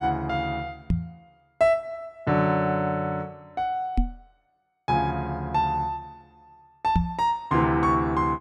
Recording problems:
microphone bump; at 1 s, at 4 s and at 7 s; peak +5 dB vs average level

